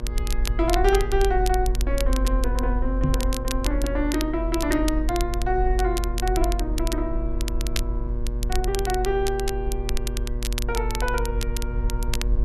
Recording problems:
hum; 60 Hz, harmonics up to 1.6 kHz, SNR 10 dB
low-frequency rumble; below 46 Hz, strongest tone 44 Hz, SNR 2 dB
crackle; vinyl, SNR 9 dB
knock on the microphone; at 3 s; peak +6 dB vs average level

